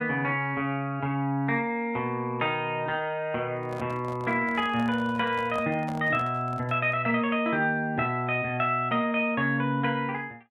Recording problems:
microphone handling noise; from 3.5 to 7 s; peak -8 dB vs average level

